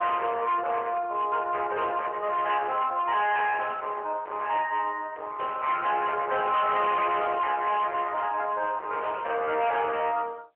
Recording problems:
phone line; 370 Hz to 3.3 kHz, AMR-NB
distortion; soft clipping, signal-to-distortion ratio 8 dB

